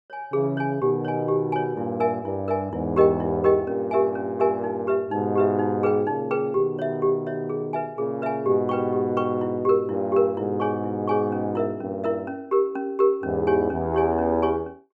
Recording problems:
none

